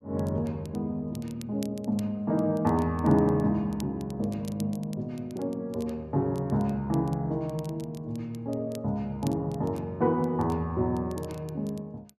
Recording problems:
crackle; vinyl, SNR 24 dB

